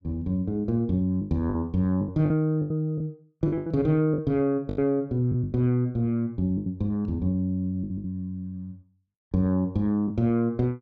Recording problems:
lost packets; 9% of the sound replaced, filled with the last packet

